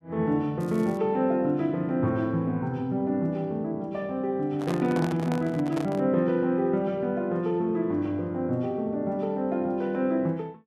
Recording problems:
crackling; at 0.5 s; loose cable, SNR 27 dB
handling noise; from 4.5 to 6 s; peak -4 dB vs average level

